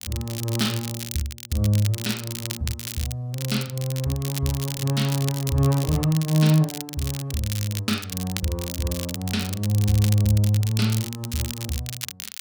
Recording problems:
crackling; vinyl, SNR 9 dB

